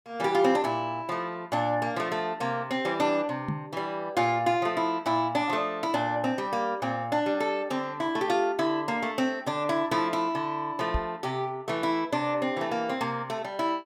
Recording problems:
microphone thump; at 3.5 s and at 11 s; peak +1 dB vs average level

